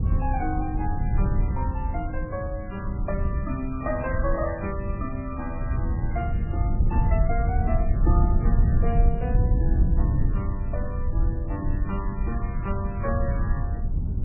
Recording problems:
lossy codec; MP3, log-spectral distance 2 dB, nothing above 2.4 kHz
low-frequency rumble; below 94 Hz, SNR -6 dB

